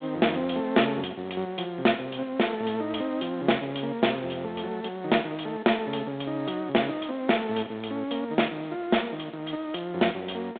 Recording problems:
phone line; 240 Hz to 3.6 kHz, G.726

